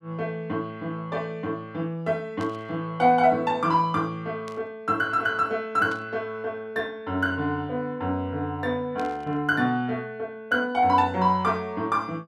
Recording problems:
burst of static; 4 times, first at 2.5 s; peak -12 dB vs average level

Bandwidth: 13 kHz